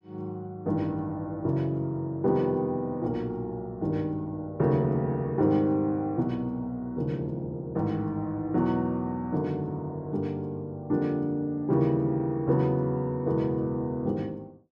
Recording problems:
none

